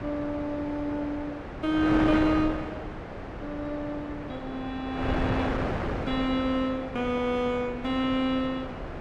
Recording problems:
wind on the microphone; below 880 Hz, SNR 5 dB

